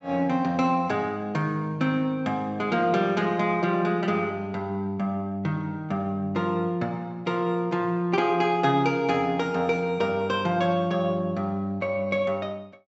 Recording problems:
treble cut off; nothing above 7.5 kHz

